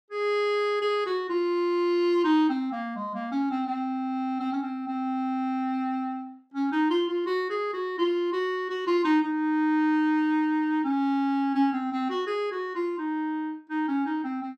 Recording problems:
none

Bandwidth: 15 kHz